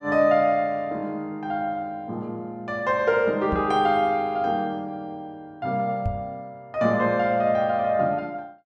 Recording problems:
microphone thump; at 3.5 s and at 6 s; peak +1 dB vs average level

